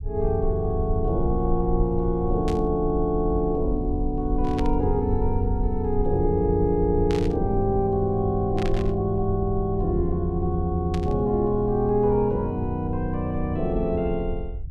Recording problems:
low-frequency rumble; below 66 Hz, SNR 7 dB
static burst; 5 times, first at 2.5 s; peak -8 dB vs average level

